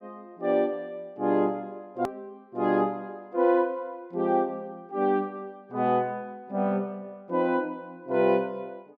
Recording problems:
edit click; at 2 s

